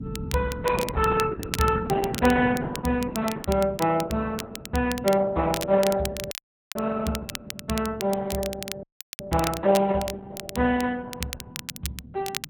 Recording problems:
lossy compression; Opus, log-spectral distance 3 dB
low-frequency rumble; below 220 Hz, SNR 14 dB
crackle; vinyl, SNR 11 dB
dropout; at 6.5 s and at 9 s

